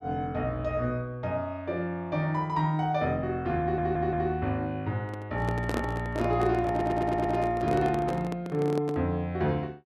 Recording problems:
audio stuttering; at 3.5 s and at 6.5 s
microphone handling noise; from 5 to 9 s; peak +1 dB vs average level

